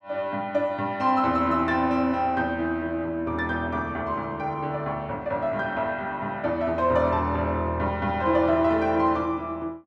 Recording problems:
none

